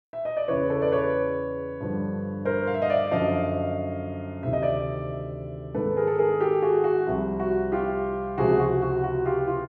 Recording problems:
none

